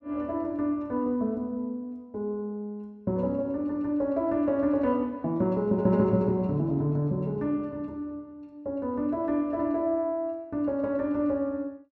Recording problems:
none

